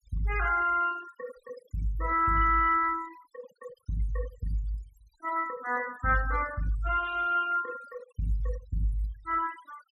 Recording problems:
noise reduction artefacts; signal-to-artefact ratio 19 dB

